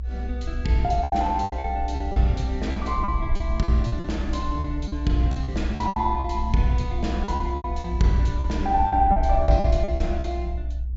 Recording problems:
treble cut off; nothing above 8 kHz
rumble; below 64 Hz, strongest tone 62 Hz, SNR 4 dB
packet loss; 13% of the sound replaced, filled with repeated pitch periods

